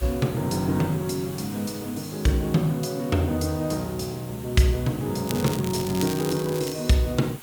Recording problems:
hiss; SNR 17 dB
crackling; from 5.5 to 6.5 s; loose cable, SNR 11 dB

